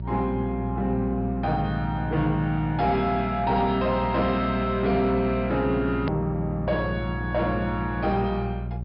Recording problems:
treble missing; nothing above 5.1 kHz
distorted audio; soft clipping, signal-to-distortion ratio 9 dB
electrical hum; 60 Hz, harmonics up to 420 Hz, SNR 7 dB
hard cut with a click; at 6 s

